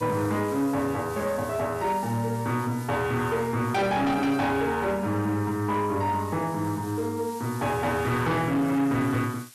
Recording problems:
distorted audio; soft clipping, signal-to-distortion ratio 12 dB
hiss; slope +2 dB per octave, SNR 19 dB

